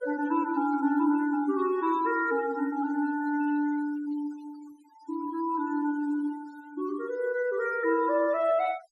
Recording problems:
denoising artefacts; signal-to-artefact ratio 21 dB

